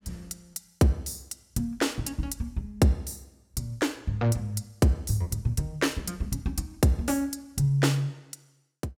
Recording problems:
none

